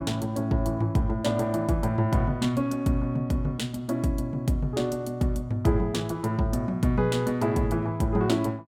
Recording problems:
none

